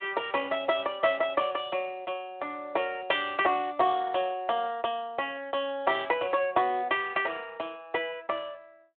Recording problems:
telephone audio; 240 Hz to 3.5 kHz, Speex

